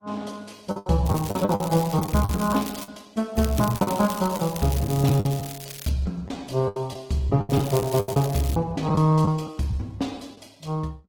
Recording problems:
lossy compression; Opus, log-spectral distance 4 dB, nothing above 18.3 kHz
packet loss; 10% of the sound replaced, filled with the last packet
crackle; from 1 to 3 s, from 3.5 to 6 s and from 7.5 to 8.5 s; loose cable, SNR 13 dB

